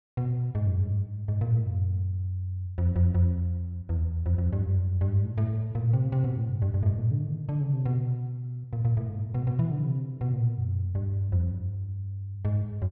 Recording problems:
none

